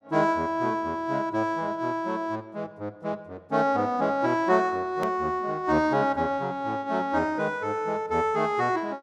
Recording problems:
click at an edit; at 5 s

